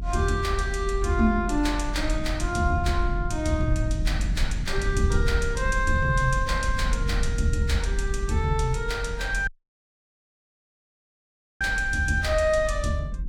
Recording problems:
rumble; below 64 Hz, strongest tone 42 Hz, SNR 4 dB
dropout; at 9.5 s for 2 s

